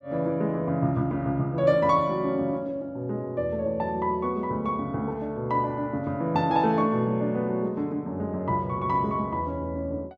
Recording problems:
none

